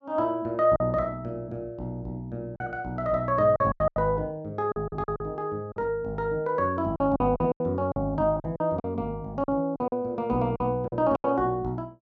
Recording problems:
lost packets; 9% of the sound replaced, filled with silence

